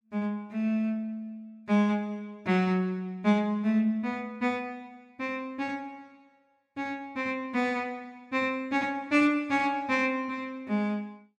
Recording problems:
none

